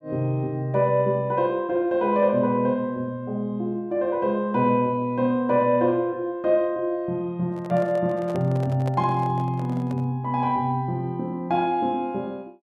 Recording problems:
microphone handling noise; from 7.5 to 10 s; peak -7 dB vs average level

